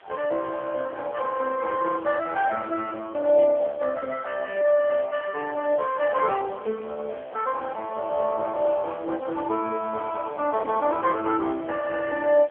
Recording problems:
telephone audio; 340 Hz to 3.1 kHz, AMR-NB
hiss; SNR 27 dB

